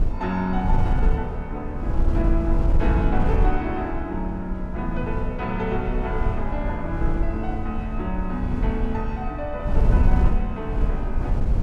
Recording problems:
wind on the microphone; below 70 Hz, SNR -2 dB

